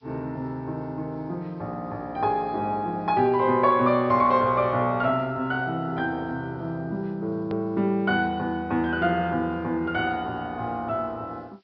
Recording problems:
treble cut off; nothing above 5.5 kHz
background hiss; SNR 43 dB
hard cut with a click; at 7.5 s

